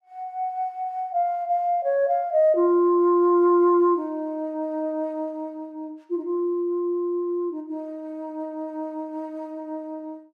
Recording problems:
none

